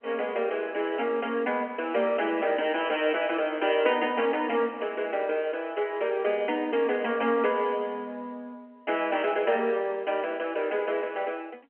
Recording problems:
telephone audio; 240 Hz to 3.2 kHz, G.711

